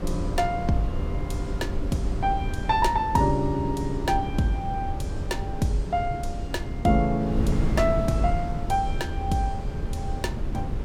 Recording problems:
wind on the microphone; below 140 Hz, SNR 4 dB

